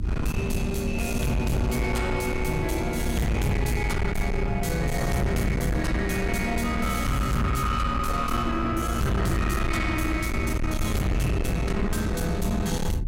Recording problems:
distorted audio; soft clipping, signal-to-distortion ratio 7 dB
mains hum; 60 Hz, harmonics up to 360 Hz, SNR 8 dB
low-frequency rumble; below 110 Hz, SNR 6 dB

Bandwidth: 16 kHz